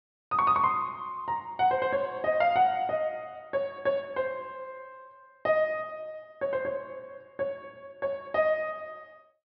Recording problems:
treble cut off; nothing above 5.5 kHz

